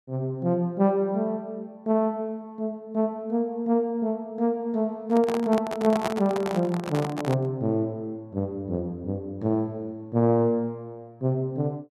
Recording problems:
handling noise; from 5 to 7.5 s; peak +2 dB vs average level

